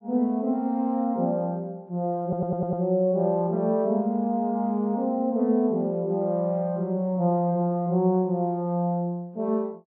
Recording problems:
audio stuttering; at 2 s

